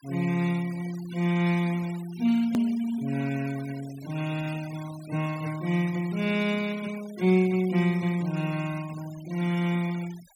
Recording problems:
noise reduction artefacts; signal-to-artefact ratio 18 dB
click at an edit; at 2.5 s

